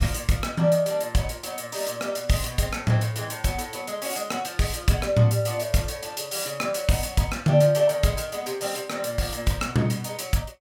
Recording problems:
none

